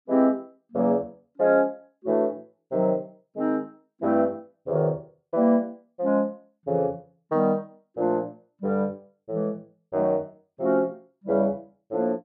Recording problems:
none

